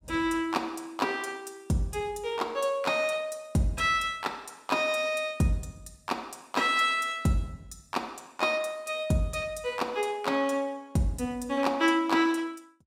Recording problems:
none

